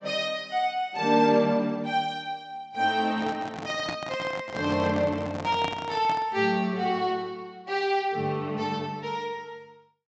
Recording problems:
treble missing; nothing above 8 kHz
handling noise; from 3 to 6.5 s; peak -2 dB vs average level

